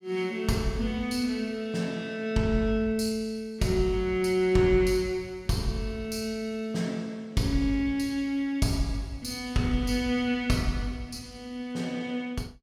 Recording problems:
none

